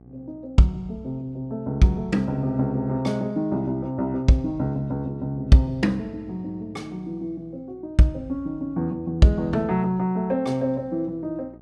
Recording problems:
electrical hum; 60 Hz, harmonics up to 840 Hz, SNR 26 dB

